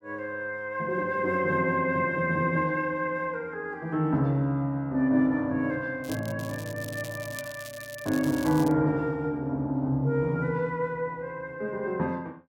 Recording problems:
crackle; from 6 to 8.5 s; loose cable, SNR 16 dB

